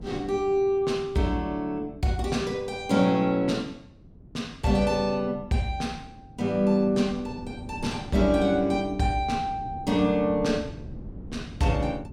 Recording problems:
wind noise; below 220 Hz, SNR 18 dB

